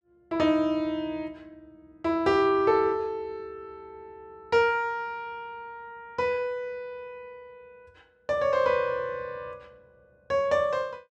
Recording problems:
none

